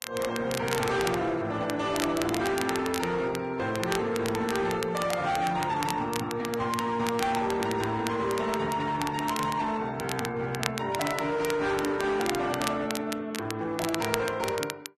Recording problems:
lossy codec; Vorbis, log-spectral distance 2 dB, nothing above 10.4 kHz
distortion; hard clipping, uneven, signal-to-distortion ratio 11 dB
crackling; vinyl, SNR 9 dB

